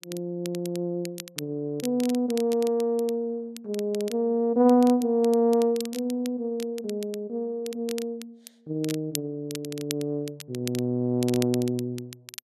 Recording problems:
crackling; vinyl, SNR 15 dB

